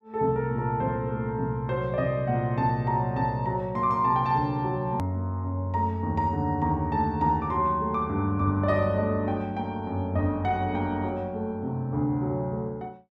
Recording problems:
click at an edit; at 5 s

